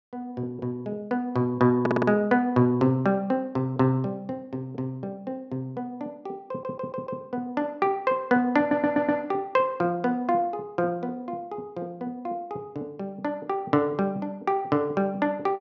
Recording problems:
stutter; at 2 s, at 6.5 s and at 8.5 s

